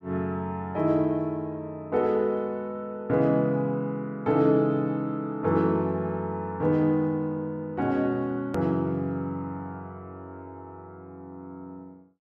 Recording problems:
edit click; at 8.5 s

